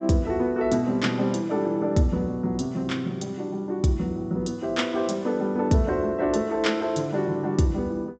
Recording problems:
treble missing; nothing above 8 kHz

